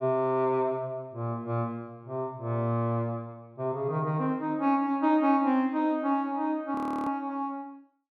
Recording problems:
frozen audio; at 7 s

